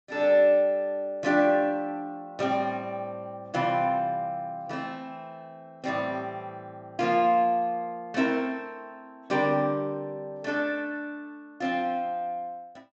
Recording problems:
low-pass filter; nothing above 8 kHz

